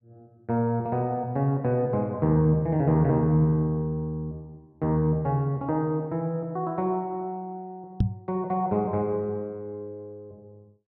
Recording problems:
knock on the microphone; at 8 s; peak +6 dB vs average level

